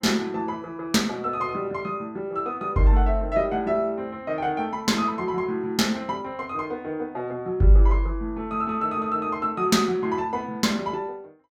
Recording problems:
none

